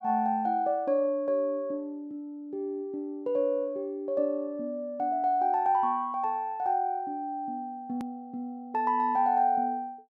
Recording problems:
hard cut with a click; at 8 s

